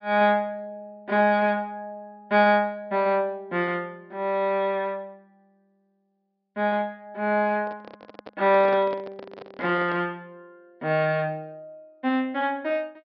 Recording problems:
treble missing; nothing above 5.5 kHz
microphone handling noise; from 7.5 to 10 s; peak -9 dB vs average level

